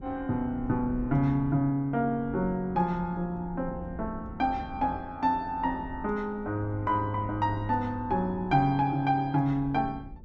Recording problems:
wind on the microphone; below 210 Hz, SNR 15 dB

